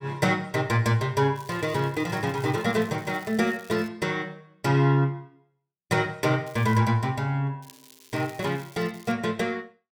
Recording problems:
crackle; from 1.5 to 4 s, at 6.5 s and from 7.5 to 9 s; loose cable, SNR 24 dB

